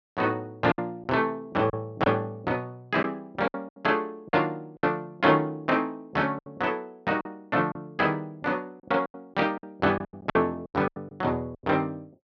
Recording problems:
packet loss; 9% of the sound replaced, filled with silence

